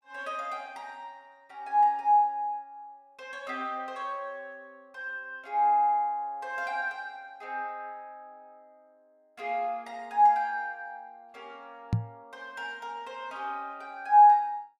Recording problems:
microphone thump; at 12 s; peak +4 dB vs average level

